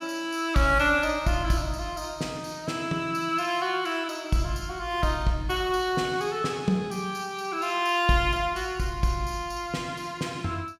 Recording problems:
none

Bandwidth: 17 kHz